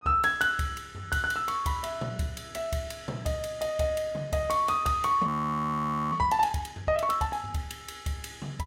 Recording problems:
audio freezing; at 5.5 s for 1 s

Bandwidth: 16 kHz